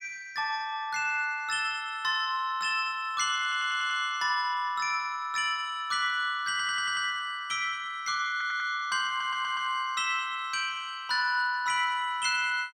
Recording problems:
audio stuttering; 4 times, first at 3.5 s

